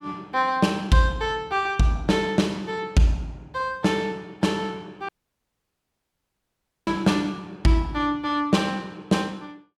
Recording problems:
dropout; at 5 s for 2 s

